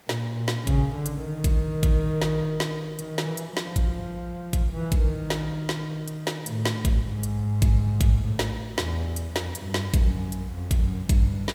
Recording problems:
background hiss; slope -4 dB per octave, SNR 28 dB

